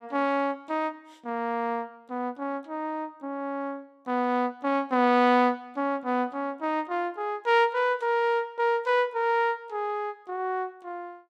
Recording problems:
none

